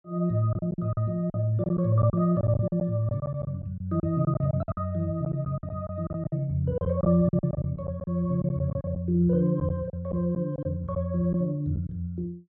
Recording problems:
packet loss; 12% of the sound replaced, filled with silence

